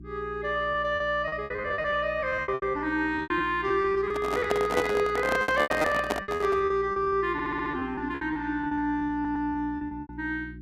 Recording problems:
hum; 60 Hz, harmonics up to 360 Hz, SNR 17 dB
packet loss; 17% of the sound replaced, filled with repeated pitch periods
handling noise; from 4 to 6.5 s; peak +4 dB vs average level
audio stuttering; at 7.5 s and at 9 s

